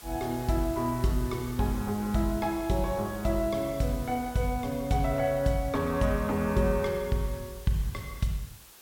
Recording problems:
hiss; slope -1 dB per octave, SNR 18 dB

